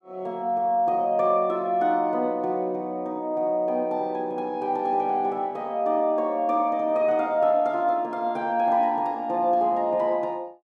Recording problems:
none

